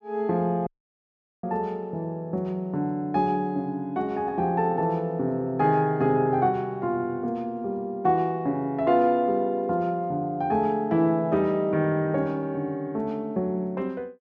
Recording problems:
audio cutting out; at 0.5 s for 1 s

